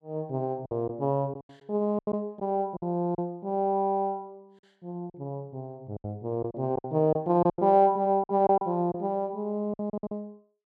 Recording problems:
lost packets; 10% of the sound replaced, filled with silence

